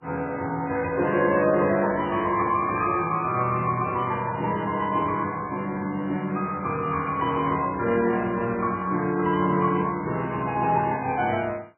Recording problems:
lossy compression; MP3, log-spectral distance 3 dB, nothing above 2.5 kHz

